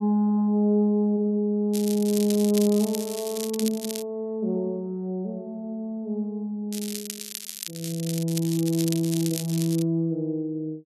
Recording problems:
crackling; from 1.5 to 4 s and from 6.5 to 10 s; loose cable, SNR 9 dB

